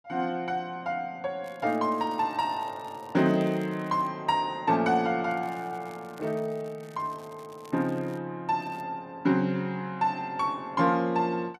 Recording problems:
crackle; from 1.5 to 4 s, from 5.5 to 8 s and at 8.5 s; loose cable, SNR 28 dB

